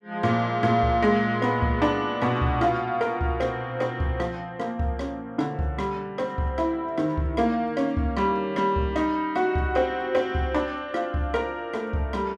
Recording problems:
none

